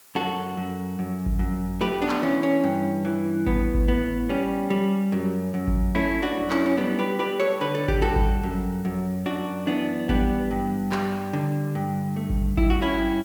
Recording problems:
background hiss; slope 0 dB per octave, SNR 24 dB

